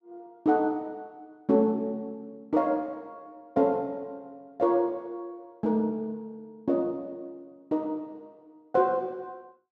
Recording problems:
none

